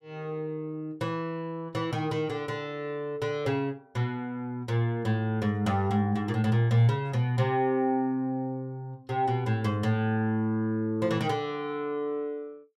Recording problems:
none

